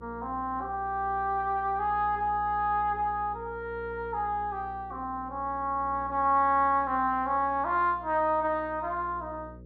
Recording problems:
hum; 60 Hz, harmonics up to 540 Hz, SNR 19 dB

